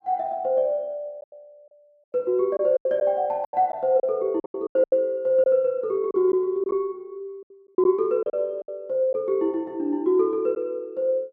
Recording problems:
packet loss; 9% of the sound replaced, filled with silence

